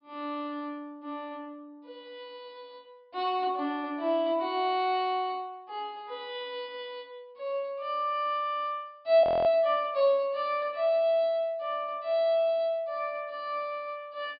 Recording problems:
treble cut off; nothing above 5.2 kHz
frozen audio; at 9 s

